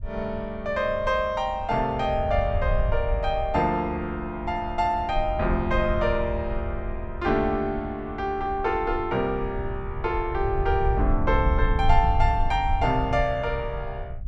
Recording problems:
rumble; below 74 Hz, SNR 6 dB

